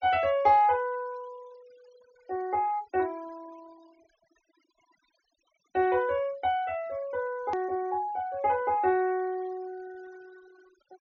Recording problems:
treble missing; nothing above 6.8 kHz
denoising artefacts; signal-to-artefact ratio 27 dB
click at an edit; at 7.5 s

